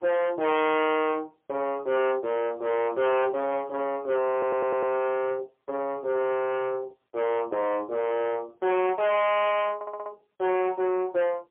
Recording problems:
phone line; 990 Hz to 3.3 kHz, AMR-NB, then MP3
distorted audio; soft clipping, signal-to-distortion ratio 6 dB
stutter; at 4.5 s and at 10 s

